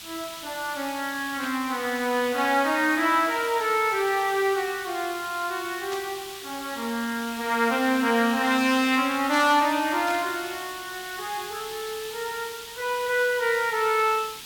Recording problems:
background hiss; SNR 12 dB
static burst; at 1.5 s, at 6 s and at 10 s; peak -8 dB vs average level

